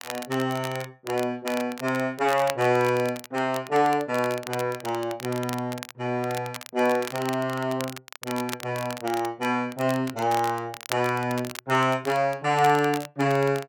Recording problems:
crackling; vinyl, SNR 13 dB

